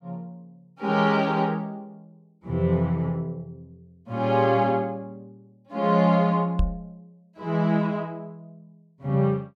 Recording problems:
microphone bump; at 6.5 s; peak +3 dB vs average level

